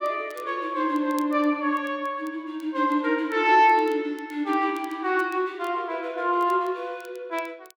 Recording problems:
crackle; vinyl, SNR 29 dB

